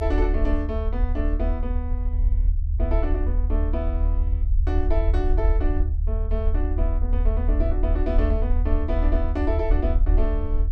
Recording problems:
rumble; below 74 Hz, strongest tone 38 Hz, SNR -6 dB

